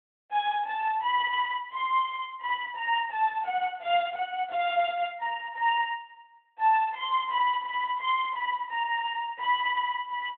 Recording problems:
telephone audio; 280 Hz to 3.5 kHz, Speex

